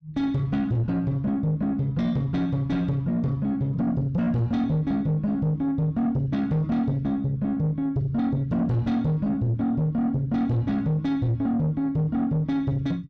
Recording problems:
distortion; soft clipping, signal-to-distortion ratio 11 dB

